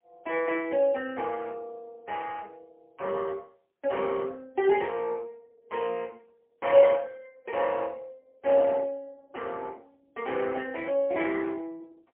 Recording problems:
telephone audio; 340 Hz to 3.3 kHz, AMR-NB, then MP3

